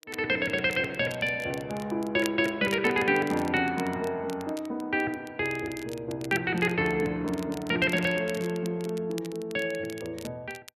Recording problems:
crackle; vinyl, SNR 18 dB

